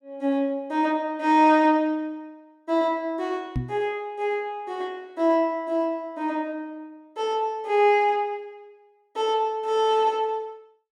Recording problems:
knock on the microphone; at 3.5 s; peak 0 dB vs average level

